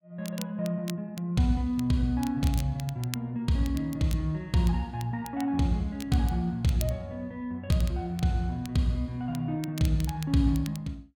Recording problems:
crackling; vinyl, SNR 17 dB

